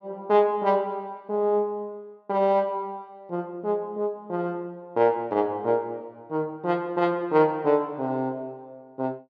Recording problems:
none

